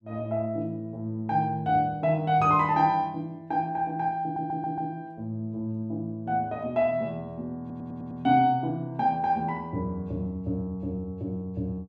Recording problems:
stutter; at 4 s and at 7.5 s

